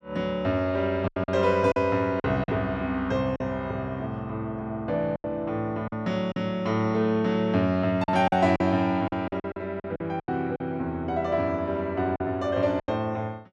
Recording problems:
packet loss; 8% of the sound replaced, filled with silence

